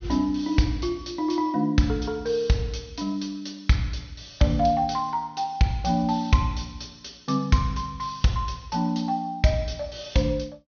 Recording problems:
low-pass filter; nothing above 6.5 kHz

